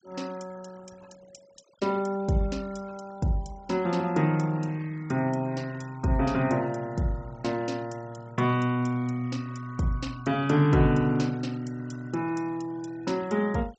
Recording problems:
treble cut off; nothing above 8 kHz
noise reduction artefacts; signal-to-artefact ratio 24 dB

